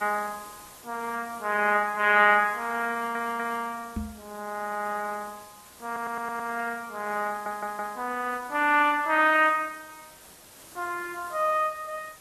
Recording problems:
lossy codec; AAC, log-spectral distance 8 dB
background hiss; slope -2 dB per octave, SNR 21 dB
stutter; at 3 s, at 6 s and at 7.5 s
microphone thump; at 4 s; peak -2 dB vs average level

